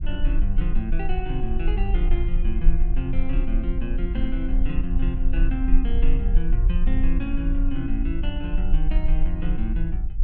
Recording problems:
rumble; below 40 Hz, strongest tone 22 Hz, SNR -4 dB

